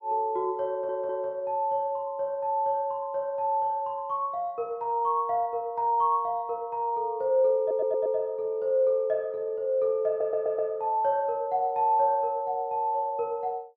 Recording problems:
audio stuttering; at 0.5 s, at 7.5 s and at 10 s

